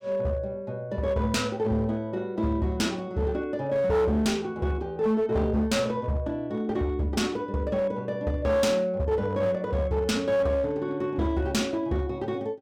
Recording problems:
distortion; hard clipping, uneven, signal-to-distortion ratio 11 dB

